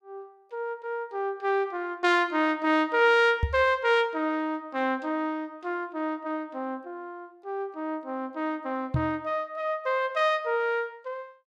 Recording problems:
microphone thump; at 3.5 s and at 9 s; peak +4 dB vs average level

